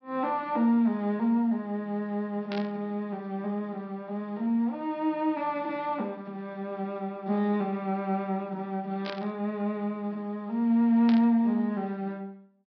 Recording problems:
low-pass filter; nothing above 5.5 kHz
burst of static; at 2.5 s, at 9 s and at 11 s; peak -5 dB vs average level

